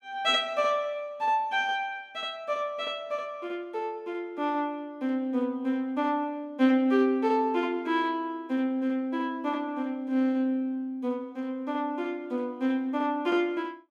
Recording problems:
none

